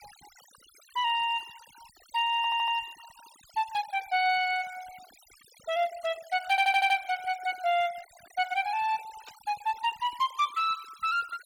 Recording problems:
noise reduction artefacts; signal-to-artefact ratio 20 dB
audio stuttering; at 2.5 s and at 6.5 s
static burst; at 9.5 s; peak -17 dB vs average level

